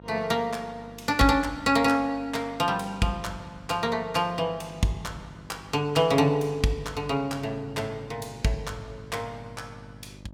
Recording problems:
hum; 50 Hz, harmonics up to 1.3 kHz, SNR 21 dB

